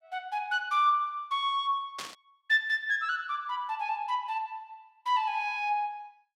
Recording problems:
static burst; at 2 s; peak -5 dB vs average level

